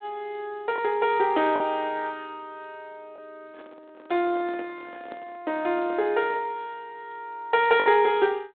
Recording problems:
telephone audio; 170 Hz to 3.6 kHz, G.726
packet loss; 1.7% of the sound replaced, filled with the last packet
microphone handling noise; from 3.5 to 6.5 s; peak -12 dB vs average level

